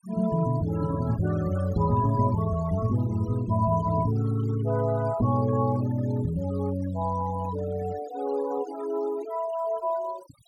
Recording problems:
noise reduction artefacts; signal-to-artefact ratio 18 dB

